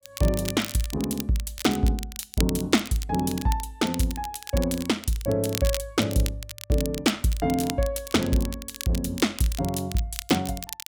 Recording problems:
crackle; vinyl, SNR 10 dB

